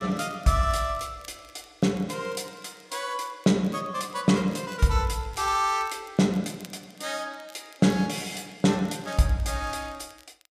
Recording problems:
crackling; vinyl, SNR 27 dB

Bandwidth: 14.5 kHz